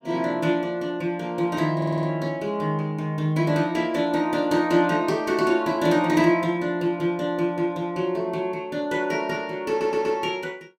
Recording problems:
stutter; at 2 s and at 9.5 s

